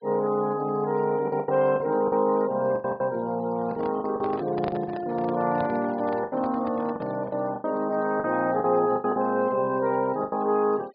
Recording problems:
treble missing; nothing above 5 kHz
denoising artefacts; signal-to-artefact ratio 25 dB
packet loss; 10% of the sound replaced, filled with the last packet
handling noise; from 3.5 to 7.5 s; peak -6 dB vs average level

